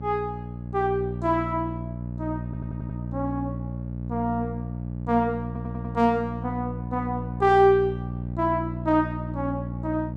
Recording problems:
hum; 60 Hz, harmonics up to 600 Hz, SNR 7 dB
audio stuttering; at 2.5 s and at 5.5 s

